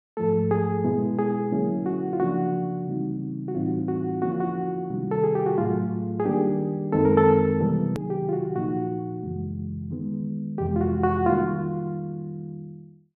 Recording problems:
hard cut with a click; at 8 s

